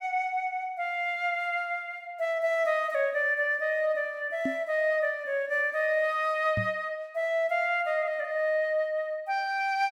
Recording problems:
microphone bump; at 4.5 s and at 6.5 s; peak 0 dB vs average level

